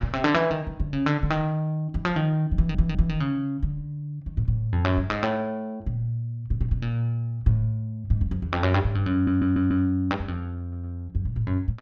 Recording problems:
stutter; at 2.5 s, at 9 s and at 11 s

